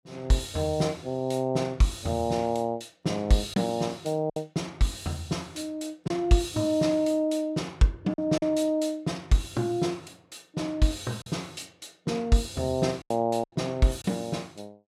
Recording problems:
lost packets; 3% of the sound replaced, filled with silence

